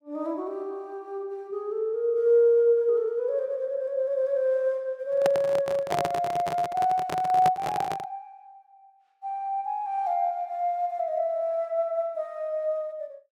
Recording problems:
microphone handling noise; from 5 to 8 s; peak +2 dB vs average level

